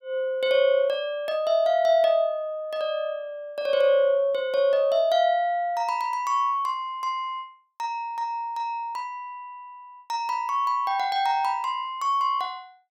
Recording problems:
none

